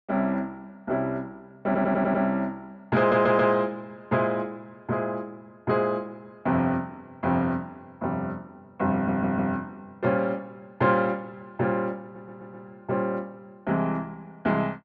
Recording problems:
audio stuttering; 4 times, first at 1.5 s

